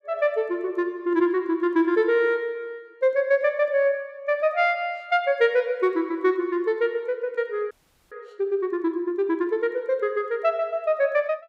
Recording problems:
audio freezing; at 7.5 s

